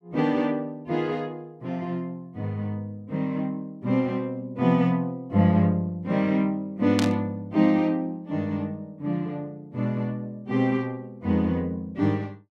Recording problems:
static burst; at 7 s; peak +1 dB vs average level

